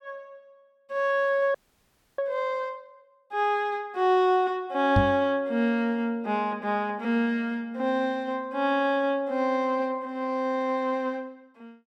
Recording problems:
frozen audio; at 1.5 s for 0.5 s
knock on the microphone; at 5 s; peak +6 dB vs average level

